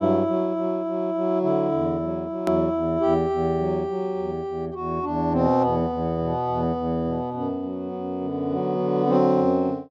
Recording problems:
edit click; at 2.5 s

